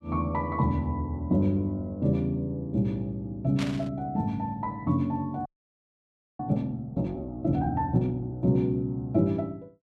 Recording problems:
burst of static; at 3.5 s; peak -3 dB vs average level
audio freezing; at 5.5 s for 1 s

